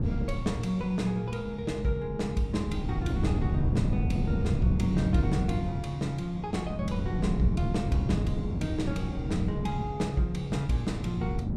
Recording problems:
wind on the microphone; below 190 Hz, SNR 0 dB

